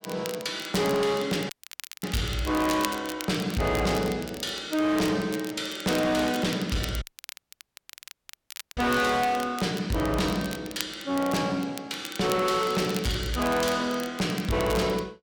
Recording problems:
distortion; hard clipping, uneven, signal-to-distortion ratio 8 dB
crackling; vinyl, SNR 14 dB
audio cutting out; at 1.5 s for 0.5 s and at 7 s for 2 s

